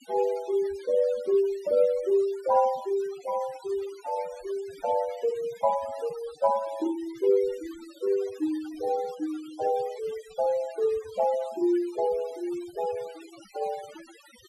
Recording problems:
noise reduction artefacts; signal-to-artefact ratio 20 dB

